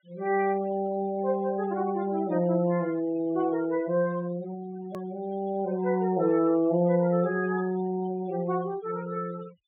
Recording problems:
treble missing; nothing above 3.8 kHz
denoising artefacts; signal-to-artefact ratio 21 dB
hard cut with a click; at 5 s

